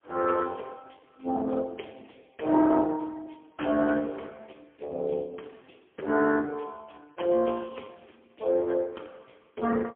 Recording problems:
phone line; 240 Hz to 3.3 kHz, AMR-NB, then MP3

